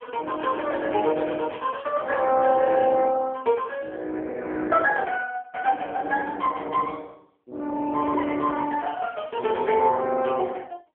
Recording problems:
phone line; 260 Hz to 2.8 kHz, AMR-NB

